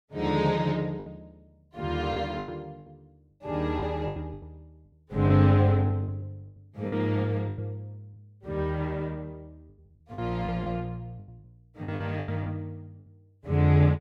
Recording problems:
lost packets; 10% of the sound replaced, filled with the last packet

